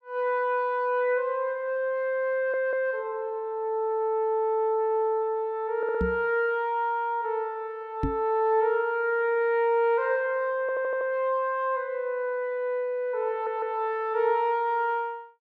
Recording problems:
audio stuttering; 4 times, first at 2.5 s
knock on the microphone; at 6 s and at 8 s; peak +2 dB vs average level

